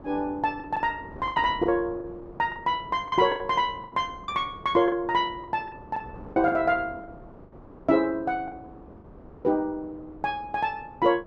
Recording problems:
wind on the microphone; below 550 Hz, SNR 19 dB
lost packets; 9% of the sound replaced, filled with the last packet

